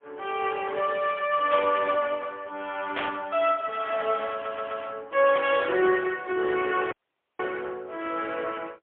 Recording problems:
phone line; 300 Hz to 3.5 kHz, AMR-NB, then MP3
burst of static; at 1.5 s, at 3 s and at 5.5 s; peak 0 dB vs average level
audio stuttering; at 4.5 s
audio cutting out; at 7 s

